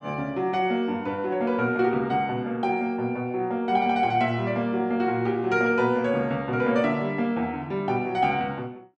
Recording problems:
none

